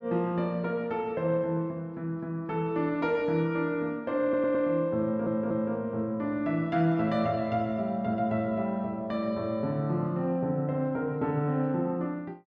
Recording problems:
audio stuttering; at 4 s and at 5 s

